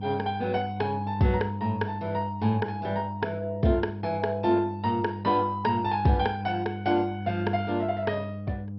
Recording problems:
codec artefacts; MP2, log-spectral distance 2 dB, nothing above 5.5 kHz
hum; 50 Hz, harmonics up to 500 Hz, SNR 7 dB

